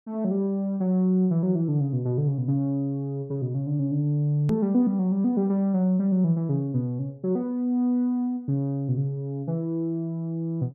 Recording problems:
click at an edit; at 4.5 s

